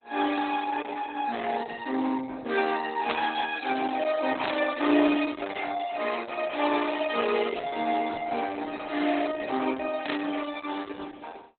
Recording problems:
lossy codec; Opus, log-spectral distance 5 dB, nothing above 3.9 kHz
burst of static; at 3 s, at 4.5 s and at 10 s; peak +3 dB vs average level

